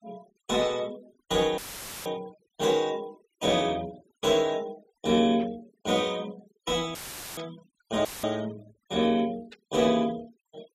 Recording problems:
denoising artefacts; signal-to-artefact ratio 22 dB
dropout; at 1.5 s, at 7 s and at 8 s; filled with static
static burst; at 5.5 s, at 7.5 s and at 9.5 s; peak -15 dB vs average level

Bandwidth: 14 kHz